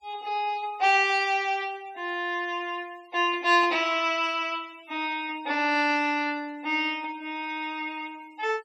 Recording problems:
denoising artefacts; signal-to-artefact ratio 26 dB

